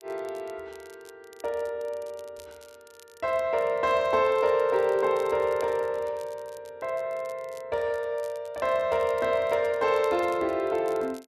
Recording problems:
crackle; vinyl, SNR 27 dB

